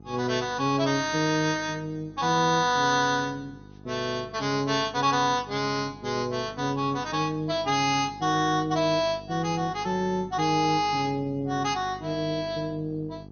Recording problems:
lossy codec; MP2, log-spectral distance 4 dB, nothing above 6.3 kHz
hum; 50 Hz, harmonics up to 900 Hz, SNR 20 dB

